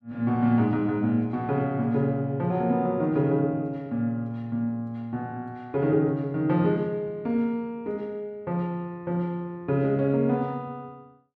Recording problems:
none

